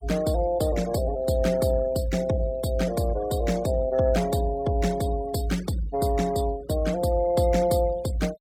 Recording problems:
noise reduction artefacts; signal-to-artefact ratio 19 dB

